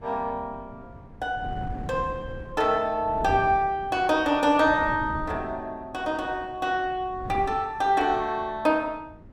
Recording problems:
wind noise; below 240 Hz, SNR 15 dB

